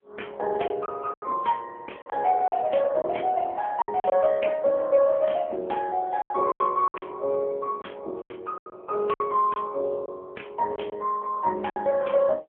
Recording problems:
phone line; 320 Hz to 3.3 kHz, AMR-NB
lost packets; 8% of the sound replaced, filled with silence

